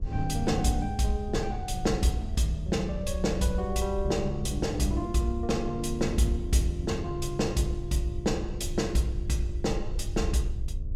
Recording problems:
hum; 50 Hz, harmonics up to 700 Hz, SNR 18 dB
rumble; below 68 Hz, SNR 8 dB

